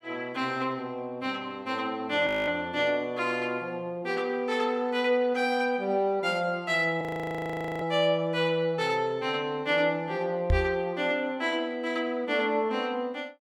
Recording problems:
frozen audio; at 2.5 s and at 7 s for 1 s
microphone bump; at 11 s; peak +5 dB vs average level

